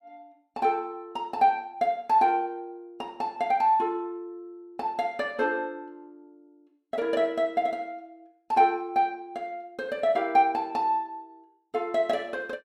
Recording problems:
none

